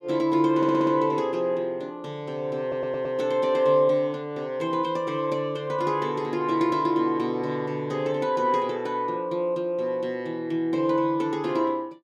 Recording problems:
audio stuttering; at 0.5 s and at 2.5 s

